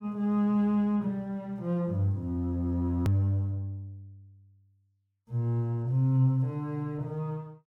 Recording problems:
edit click; at 3 s

